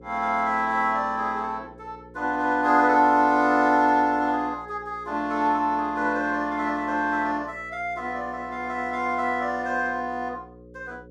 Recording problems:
electrical hum; 60 Hz, harmonics up to 540 Hz, SNR 23 dB

